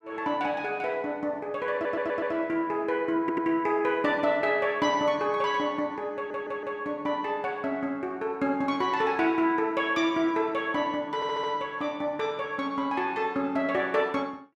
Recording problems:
stutter; 4 times, first at 1.5 s

